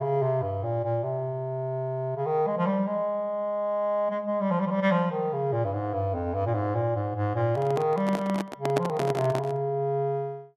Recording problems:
microphone handling noise; from 7.5 to 9.5 s; peak +3 dB vs average level

